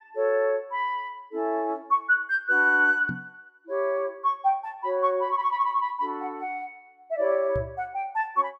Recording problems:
microphone thump; at 3 s and at 7.5 s; peak -4 dB vs average level

